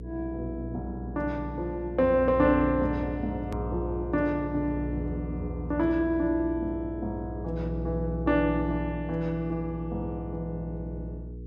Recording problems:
electrical hum; 60 Hz, harmonics up to 480 Hz, SNR 8 dB
edit click; at 3.5 s

